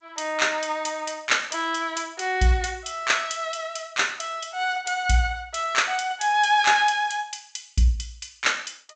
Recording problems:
codec artefacts; G.722, log-spectral distance 4 dB, nothing above 7.6 kHz

